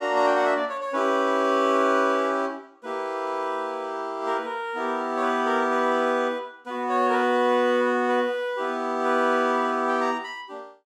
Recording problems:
none

